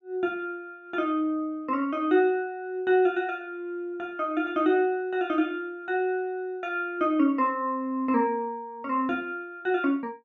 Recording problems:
none

